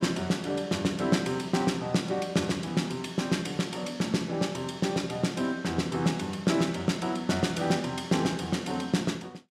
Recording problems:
none

